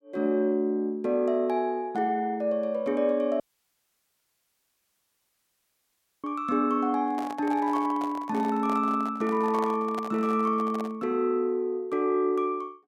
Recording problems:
audio cutting out; at 3.5 s for 3 s
microphone handling noise; from 7 to 11 s; peak -6 dB vs average level

